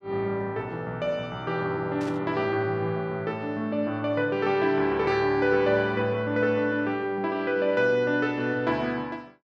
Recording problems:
burst of static; at 2 s; peak -14 dB vs average level

